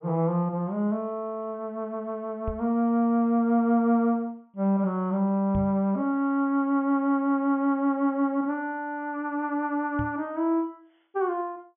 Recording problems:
treble cut off; nothing above 3.4 kHz
knock on the microphone; at 2.5 s, at 5.5 s and at 10 s; peak -2 dB vs average level

